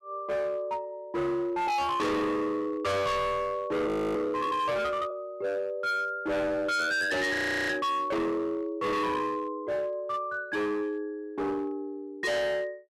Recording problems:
distorted audio; hard clipping, signal-to-distortion ratio 6 dB
audio freezing; at 4 s and at 7.5 s

